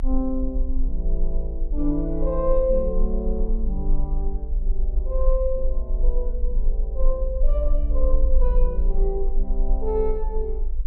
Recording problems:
low-frequency rumble; below 42 Hz, strongest tone 20 Hz, SNR -2 dB

